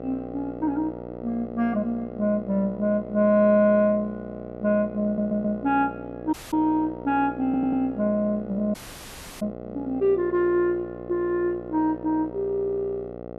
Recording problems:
hum; 60 Hz, harmonics up to 1.4 kHz, SNR 12 dB
audio stuttering; at 5 s and at 7.5 s
audio cutting out; at 6.5 s and at 8.5 s for 0.5 s

